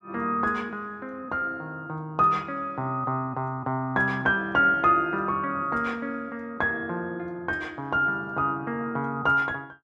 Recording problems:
none

